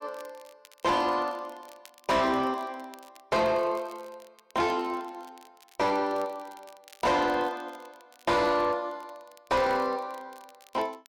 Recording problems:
distorted audio; soft clipping, signal-to-distortion ratio 7 dB
crackle; vinyl, SNR 28 dB

